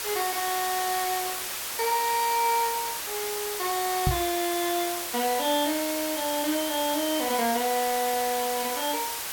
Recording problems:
background hiss; slope 0 dB per octave, SNR 3 dB
microphone thump; at 4 s; peak +5 dB vs average level

